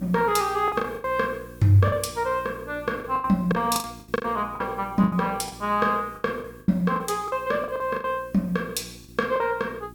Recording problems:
hum; 60 Hz, harmonics up to 360 Hz, SNR 21 dB
hiss; SNR 28 dB
lost packets; 12% of the sound replaced, filled with the last packet

